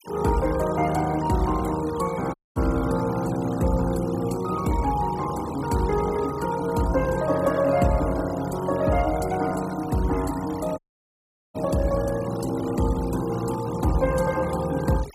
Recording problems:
denoising artefacts; signal-to-artefact ratio 18 dB
audio cutting out; at 2.5 s and at 11 s for 1 s

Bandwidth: 15 kHz